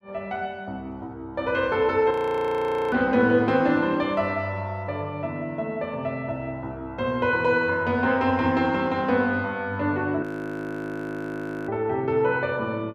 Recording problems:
audio freezing; at 2 s for 1 s and at 10 s for 1.5 s

